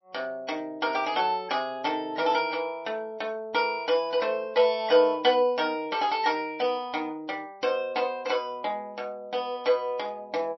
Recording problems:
lossy codec; MP3, log-spectral distance 2 dB, nothing above 5.5 kHz

